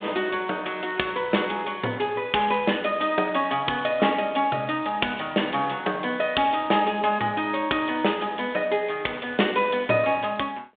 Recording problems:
telephone audio; 240 Hz to 3.6 kHz, G.726

